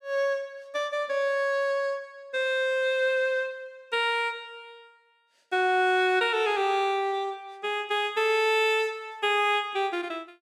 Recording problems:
none

